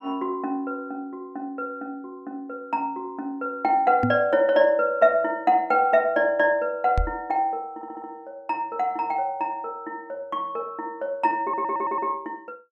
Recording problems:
microphone bump; at 4 s and at 7 s; peak +4 dB vs average level
stutter; at 8 s and at 11 s

